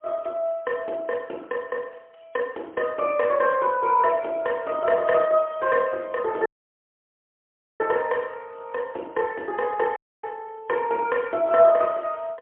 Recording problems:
telephone audio; 280 Hz to 2.7 kHz, AMR-NB, then MP3
dropout; at 6.5 s for 1.5 s and at 10 s

